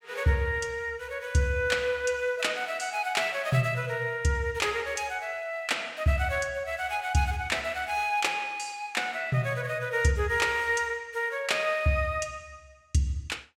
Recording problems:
none

